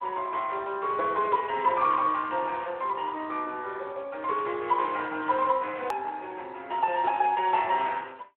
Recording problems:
telephone audio; 340 Hz to 3.4 kHz, Speex
hard cut with a click; at 6 s

